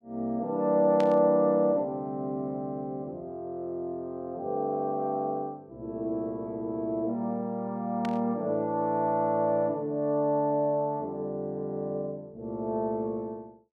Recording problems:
static burst; at 1 s and at 8 s; peak -6 dB vs average level

